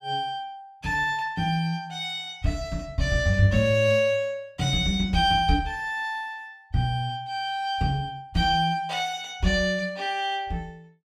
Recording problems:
none

